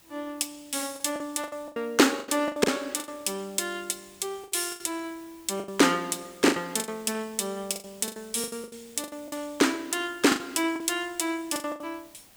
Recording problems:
background hiss; slope -2 dB per octave, SNR 25 dB
lost packets; 14% of the sound replaced, filled with the last packet

